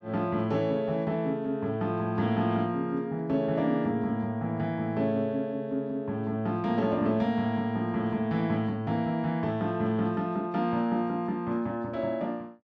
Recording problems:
none

